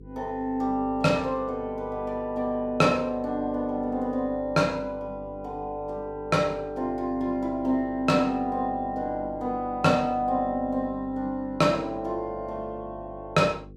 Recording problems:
hum; 50 Hz, harmonics up to 500 Hz, SNR 19 dB

